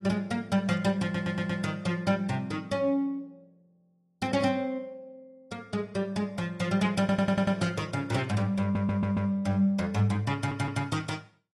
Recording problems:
lossy codec; AAC, log-spectral distance 2 dB
audio stuttering; 4 times, first at 1 s

